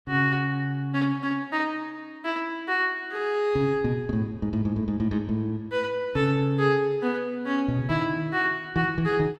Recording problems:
none

